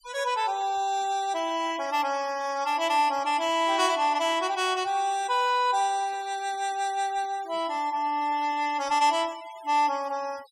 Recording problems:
denoising artefacts; signal-to-artefact ratio 20 dB

